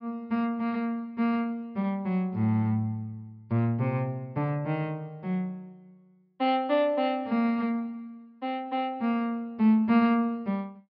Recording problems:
low-pass filter; nothing above 5.5 kHz

